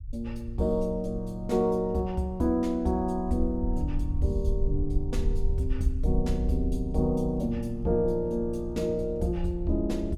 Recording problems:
rumble; below 66 Hz, SNR 6 dB

